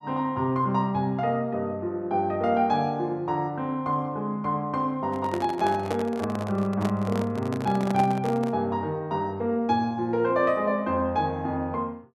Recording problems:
handling noise; from 5 to 8.5 s; peak -1 dB vs average level

